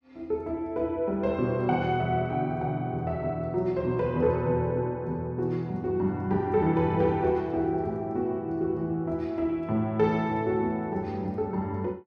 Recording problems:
none

